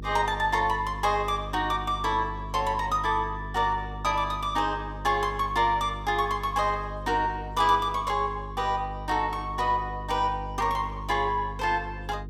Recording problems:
hum; 50 Hz, harmonics up to 500 Hz, SNR 12 dB

